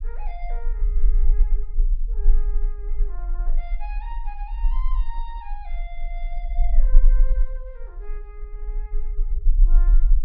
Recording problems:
treble missing; nothing above 5.5 kHz
low-frequency rumble; below 34 Hz, strongest tone 20 Hz, SNR -18 dB

